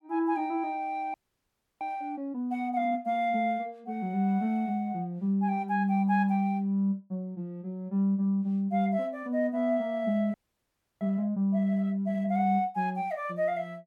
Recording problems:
audio freezing; at 1 s for 0.5 s and at 10 s for 0.5 s

